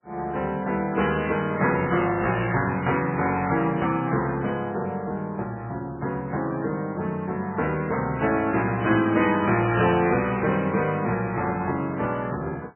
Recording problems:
lossy compression; MP3, log-spectral distance 3 dB, nothing above 2.5 kHz

